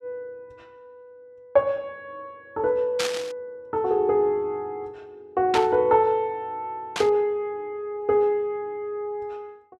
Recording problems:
static burst; at 3 s, at 5.5 s and at 7 s; peak +2 dB vs average level

